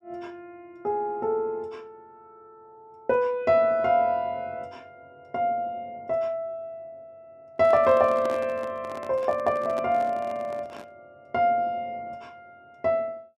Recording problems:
handling noise; from 7.5 to 11 s; peak -7 dB vs average level

